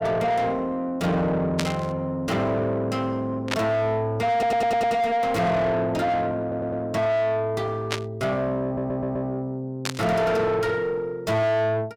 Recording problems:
distorted audio; soft clipping, signal-to-distortion ratio 6 dB
static burst; 4 times, first at 1.5 s; peak +3 dB vs average level
audio stuttering; at 4.5 s, at 6.5 s and at 8.5 s

